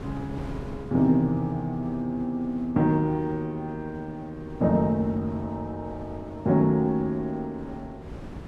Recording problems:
wind noise; below 350 Hz, SNR 17 dB

